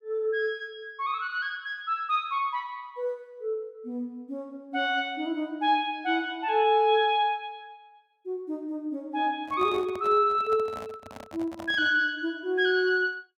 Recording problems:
handling noise; from 9.5 to 12 s; peak -10 dB vs average level

